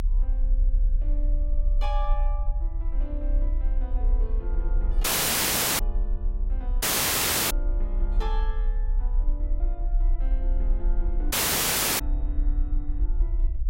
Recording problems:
rumble; below 38 Hz, strongest tone 32 Hz, SNR -13 dB
audio cutting out; at 5 s for 1 s, at 7 s for 0.5 s and at 11 s for 0.5 s

